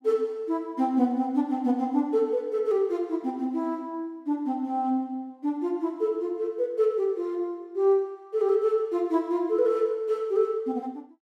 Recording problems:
none

